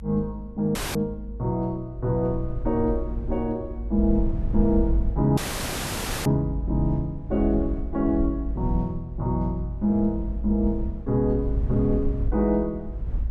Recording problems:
rumble; below 60 Hz, SNR 5 dB
dropout; at 1 s and at 5.5 s for 1 s

